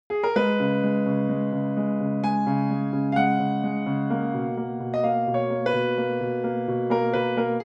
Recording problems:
none

